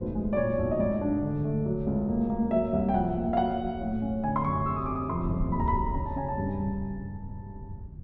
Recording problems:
wind on the microphone; below 130 Hz, SNR 12 dB

